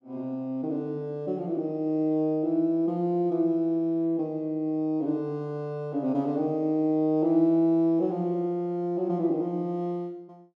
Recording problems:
none

